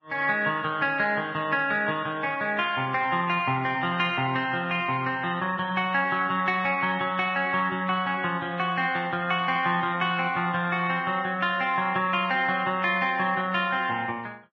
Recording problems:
lossy codec; Vorbis, log-spectral distance 3 dB, nothing above 6 kHz

